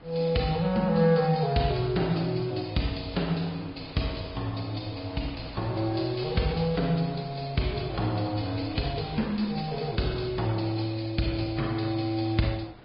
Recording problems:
treble cut off; nothing above 5 kHz
lossy compression; AAC, then Vorbis, log-spectral distance 4 dB
wind on the microphone; below 1.2 kHz, SNR 21 dB

